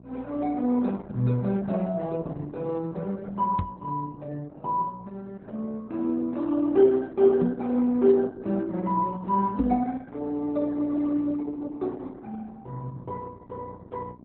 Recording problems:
codec artefacts; Opus, then Opus, log-spectral distance 2 dB
mains hum; 60 Hz, harmonics up to 780 Hz, SNR 22 dB
microphone bump; at 3.5 s, at 7.5 s and at 9.5 s; peak +5 dB vs average level

